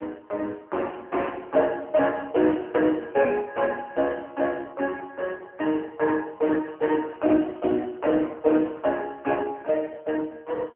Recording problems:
telephone audio; 240 Hz to 3.1 kHz, AMR-NB

